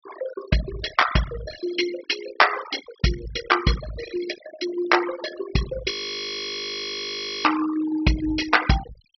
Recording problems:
treble cut off; nothing above 5.7 kHz
noise reduction artefacts; signal-to-artefact ratio 10 dB
audio freezing; at 6 s for 1.5 s

